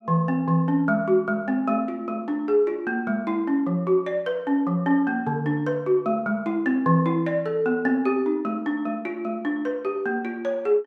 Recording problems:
none

